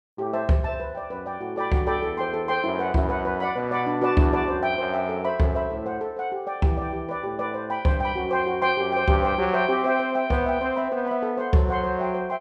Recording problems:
none

